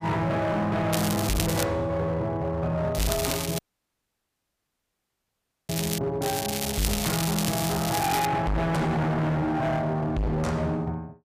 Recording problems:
distortion; hard clipping, signal-to-distortion ratio 6 dB
crackling; at 1 s, from 3 to 6 s and from 6 to 8.5 s; loose cable, SNR 4 dB
audio cutting out; at 3.5 s for 2 s

